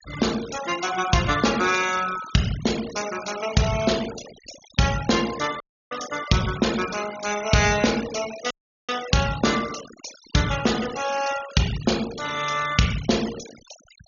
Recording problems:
treble cut off; nothing above 6.8 kHz
denoising artefacts; signal-to-artefact ratio 12 dB
audio cutting out; at 5.5 s and at 8.5 s

